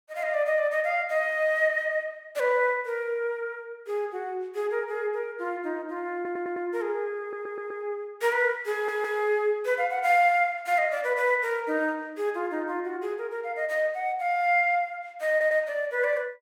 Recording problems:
audio stuttering; 4 times, first at 6 s

